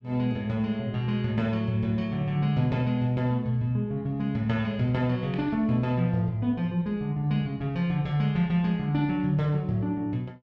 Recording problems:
none

